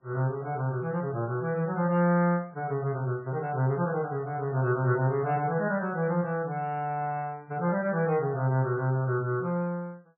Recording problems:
codec artefacts; MP3, log-spectral distance 2 dB, nothing above 2.7 kHz

